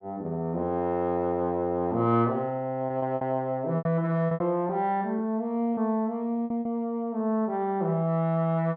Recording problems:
packet loss; 5% of the sound replaced, filled with repeated pitch periods

